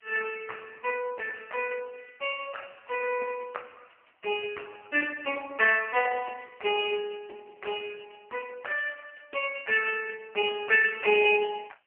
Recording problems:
telephone audio; 300 Hz to 3.1 kHz, AMR-NB
background hiss; SNR 42 dB

